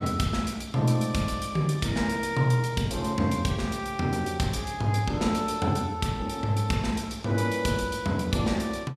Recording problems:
none

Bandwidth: 14.5 kHz